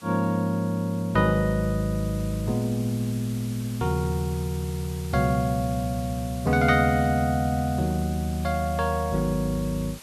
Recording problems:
background hiss; slope 0 dB per octave, SNR 18 dB

